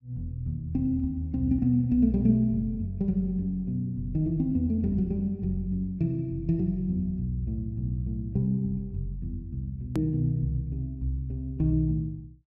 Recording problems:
hard cut with a click; at 10 s

